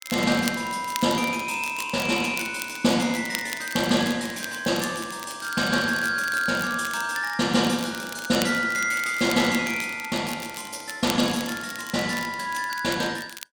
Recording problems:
crackle; vinyl, SNR 13 dB

